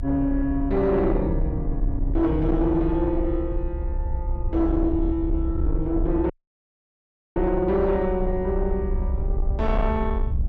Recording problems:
distorted audio; soft clipping, signal-to-distortion ratio 12 dB
low-frequency rumble; below 66 Hz, strongest tone 34 Hz, SNR 4 dB
wind on the microphone; below 350 Hz, SNR 19 dB
dropout; at 6.5 s for 1 s

